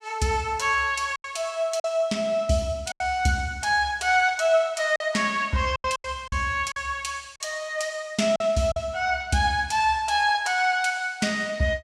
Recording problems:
lost packets; 5% of the sound replaced, filled with silence

